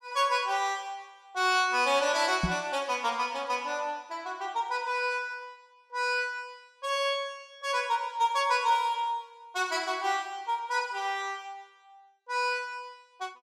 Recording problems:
microphone thump; at 2.5 s; peak +4 dB vs average level

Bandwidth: 15.5 kHz